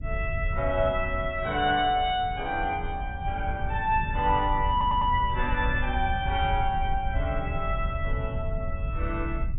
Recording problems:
codec artefacts; AAC, then AAC, log-spectral distance 2 dB, nothing above 3.1 kHz
rumble; below 86 Hz, SNR 5 dB
stutter; at 4.5 s

